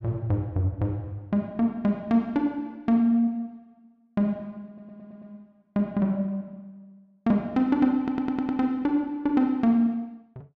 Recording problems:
audio stuttering; at 4.5 s and at 8 s

